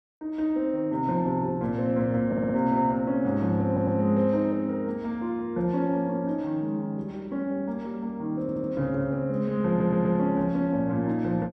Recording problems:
audio stuttering; 4 times, first at 2.5 s

